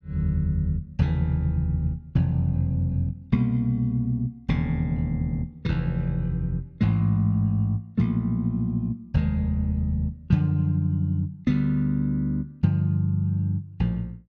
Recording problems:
none

